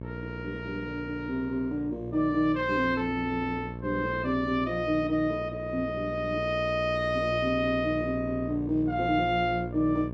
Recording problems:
electrical hum; 60 Hz, harmonics up to 660 Hz, SNR 10 dB

